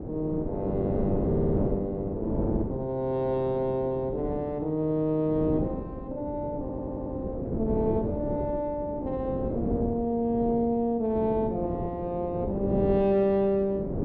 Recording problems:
wind on the microphone; below 410 Hz, SNR 5 dB
audio stuttering; at 1.5 s and at 6.5 s

